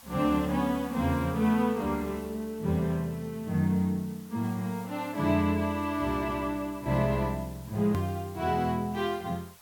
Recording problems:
background hiss; SNR 22 dB
hard cut with a click; at 8 s

